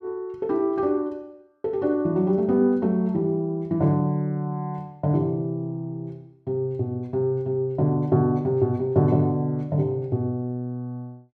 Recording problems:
none

